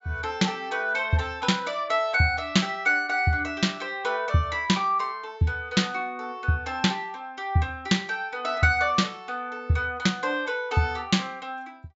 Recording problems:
treble missing; nothing above 8 kHz

